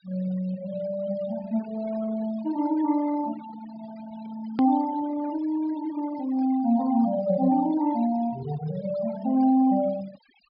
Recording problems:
treble cut off; nothing above 5.5 kHz
denoising artefacts; signal-to-artefact ratio 19 dB
hard cut with a click; at 4.5 s

